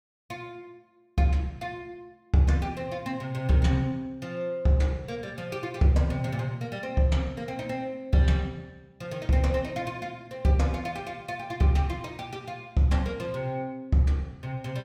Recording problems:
none

